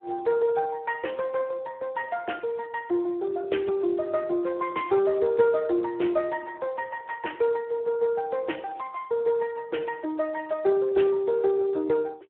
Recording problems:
phone line; 280 Hz to 3.3 kHz, Speex

